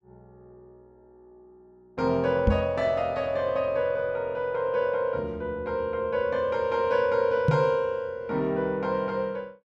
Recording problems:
microphone bump; at 2.5 s and at 7.5 s; peak +8 dB vs average level

